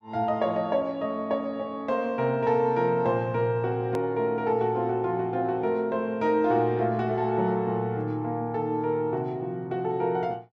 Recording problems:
hard cut with a click; at 4 s

